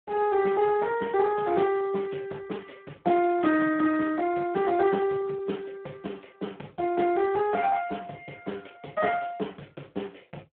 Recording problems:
telephone audio; 150 Hz to 2.8 kHz, Speex

